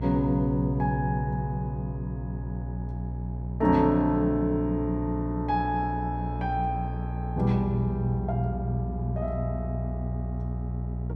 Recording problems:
hum; 60 Hz, harmonics up to 600 Hz, SNR 5 dB

